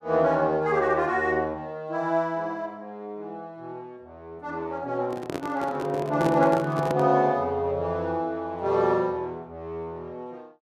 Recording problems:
microphone handling noise; from 5 to 7 s; peak 0 dB vs average level

